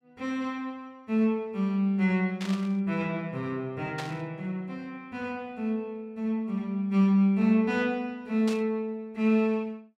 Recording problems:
static burst; at 2.5 s, at 4 s and at 8.5 s; peak -5 dB vs average level

